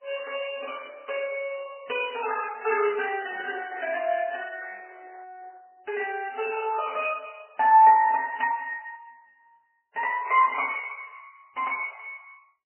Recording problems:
lossy compression; Opus, then MP3, log-spectral distance 5 dB, nothing above 2.5 kHz

